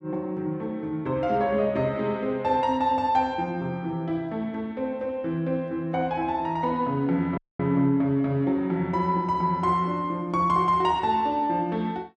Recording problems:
audio cutting out; at 7.5 s

